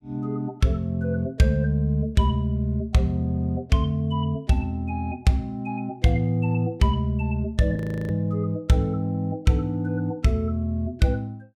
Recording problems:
frozen audio; at 8 s

